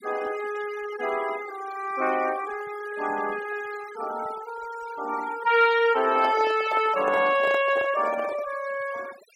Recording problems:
denoising artefacts; signal-to-artefact ratio 16 dB
handling noise; from 6 to 8.5 s; peak -3 dB vs average level

